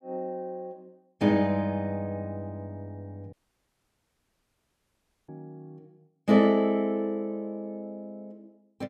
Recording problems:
audio cutting out; at 3.5 s for 2 s

